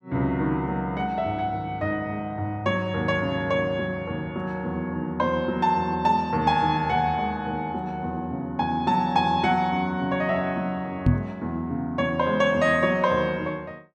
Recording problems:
microphone thump; at 11 s; peak +9 dB vs average level

